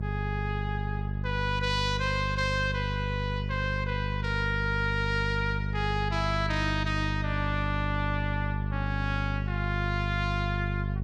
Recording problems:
mains hum; 50 Hz, harmonics up to 450 Hz, SNR 1 dB

